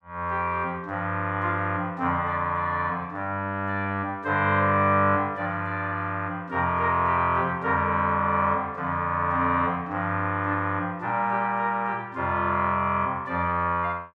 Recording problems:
none

